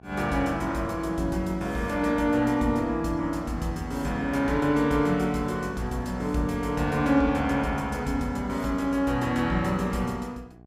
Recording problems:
hum; 60 Hz, harmonics up to 1.1 kHz, SNR 26 dB

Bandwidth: 15.5 kHz